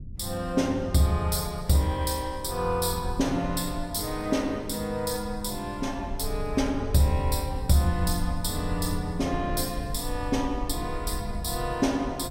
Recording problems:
low-frequency rumble; below 78 Hz, SNR 10 dB

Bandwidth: 16 kHz